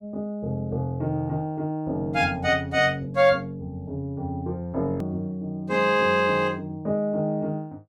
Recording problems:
edit click; at 5 s

